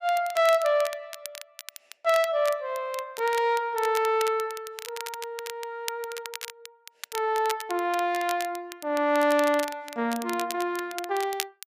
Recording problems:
crackling; vinyl, SNR 13 dB

